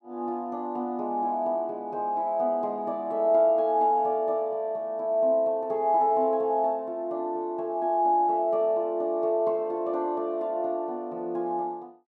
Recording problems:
none

